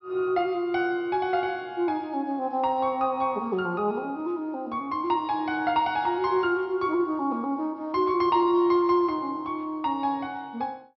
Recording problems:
treble cut off; nothing above 5.6 kHz

